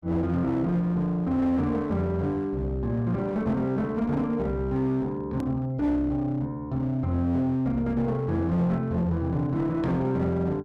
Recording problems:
distortion; hard clipping, uneven, signal-to-distortion ratio 10 dB
edit click; at 5.5 s

